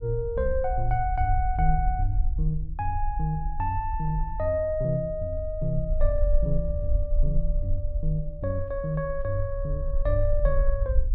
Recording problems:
low-frequency rumble; below 50 Hz, strongest tone 24 Hz, SNR 2 dB

